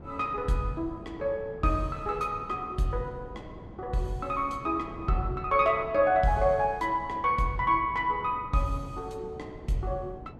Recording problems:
wind on the microphone; below 390 Hz, SNR 17 dB

